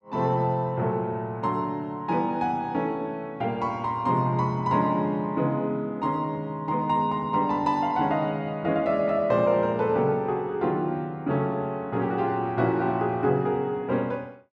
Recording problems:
none

